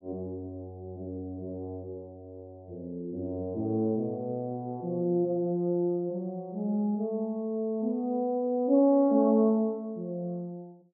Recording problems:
none

